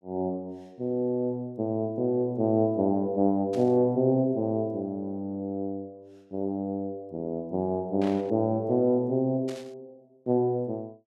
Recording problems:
burst of static; at 3.5 s, at 8 s and at 9.5 s; peak -12 dB vs average level

